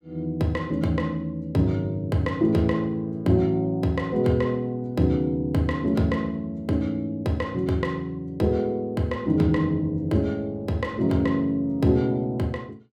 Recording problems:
none

